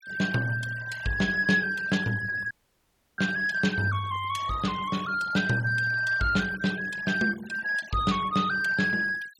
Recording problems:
denoising artefacts; signal-to-artefact ratio 19 dB
audio cutting out; at 2.5 s for 0.5 s

